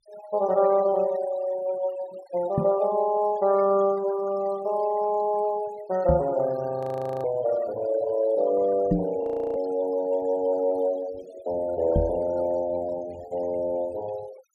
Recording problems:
noise reduction artefacts; signal-to-artefact ratio 21 dB
microphone bump; 4 times, first at 2.5 s; peak +5 dB vs average level
frozen audio; at 7 s and at 9 s

